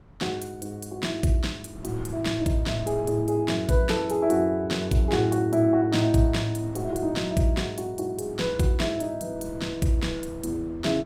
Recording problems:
wind on the microphone; below 230 Hz, SNR 20 dB

